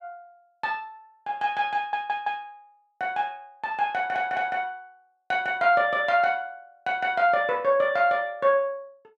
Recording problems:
audio stuttering; at 2 s and at 4 s

